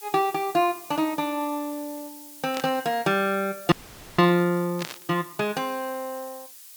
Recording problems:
hiss; slope +5 dB per octave, SNR 16 dB
static burst; at 2.5 s and at 5 s; peak -4 dB vs average level
frozen audio; at 3.5 s

